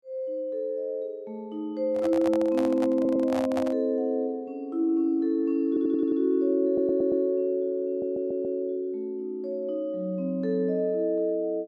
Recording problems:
microphone handling noise; from 2 to 4 s; peak -3 dB vs average level
audio stuttering; 4 times, first at 3 s

